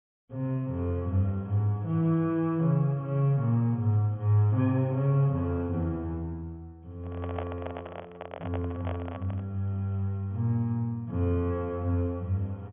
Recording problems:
treble cut off; nothing above 3.4 kHz
microphone handling noise; from 7 to 9.5 s; peak -3 dB vs average level

